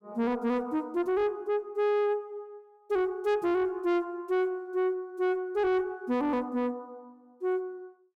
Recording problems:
distorted audio; soft clipping, signal-to-distortion ratio 11 dB

